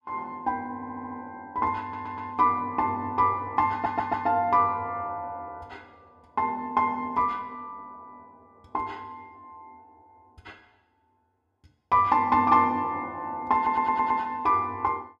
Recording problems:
stutter; 4 times, first at 1 s

